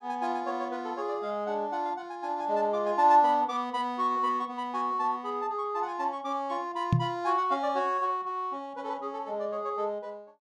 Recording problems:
microphone bump; at 7 s; peak +8 dB vs average level

